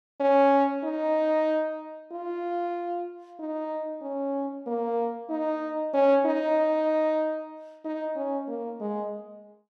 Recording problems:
none

